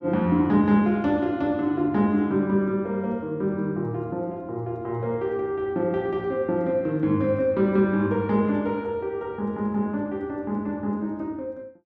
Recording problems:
none

